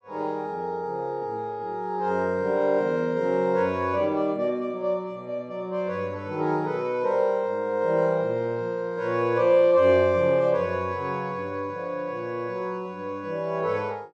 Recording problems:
none

